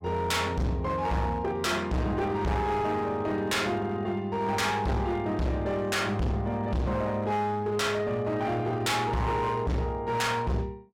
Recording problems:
distortion; hard clipping, signal-to-distortion ratio 7 dB

